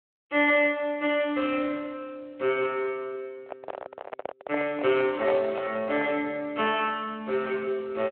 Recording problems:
phone line; 320 Hz to 3.7 kHz, Speex
handling noise; from 3.5 to 6 s; peak +2 dB vs average level

